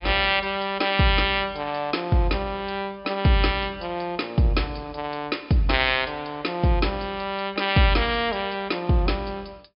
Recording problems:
low-pass filter; nothing above 5.5 kHz

